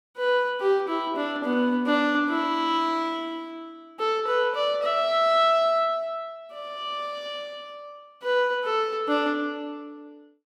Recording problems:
none

